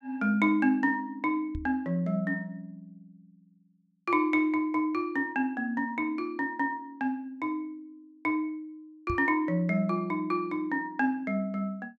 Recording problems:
knock on the microphone; at 1.5 s and at 9 s; peak -2 dB vs average level

